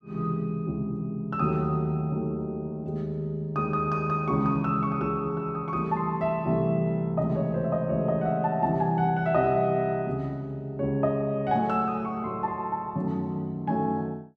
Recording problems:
none

